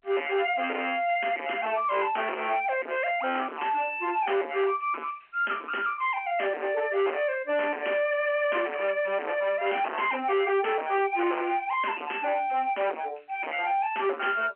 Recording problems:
telephone audio; 300 Hz to 3.1 kHz, G.711
distorted audio; hard clipping, signal-to-distortion ratio 5 dB

